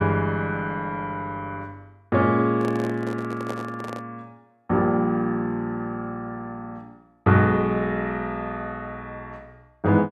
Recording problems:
microphone handling noise; from 2.5 to 4 s; peak -3 dB vs average level

